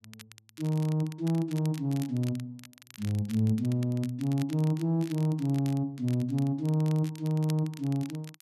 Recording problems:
crackle; vinyl, SNR 20 dB

